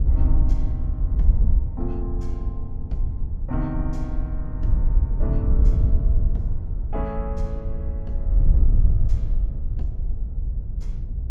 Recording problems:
wind noise; below 64 Hz, SNR -9 dB

